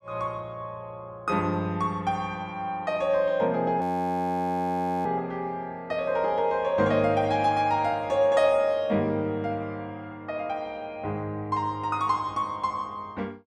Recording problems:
audio freezing; at 4 s for 1 s

